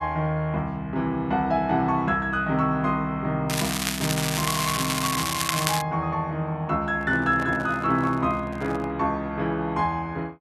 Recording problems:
crackling; from 3.5 to 6 s; loose cable, SNR 2 dB
handling noise; from 7 to 9 s; peak -7 dB vs average level

